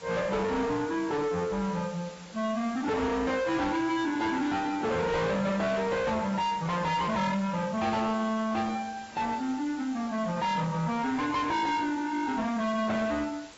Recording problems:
lossy compression; AAC, log-spectral distance 6 dB, nothing above 7.6 kHz
distorted audio; soft clipping, signal-to-distortion ratio 6 dB
background hiss; slope -2 dB per octave, SNR 18 dB

